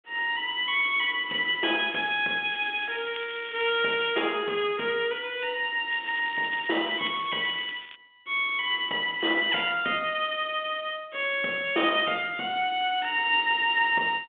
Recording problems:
phone line; 240 Hz to 3.6 kHz, G.726
crackling; from 2.5 to 4 s and from 6 to 8 s; loose cable, SNR 19 dB

